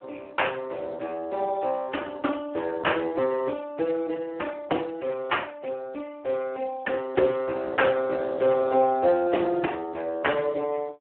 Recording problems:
telephone audio; 260 Hz to 3.2 kHz, Speex

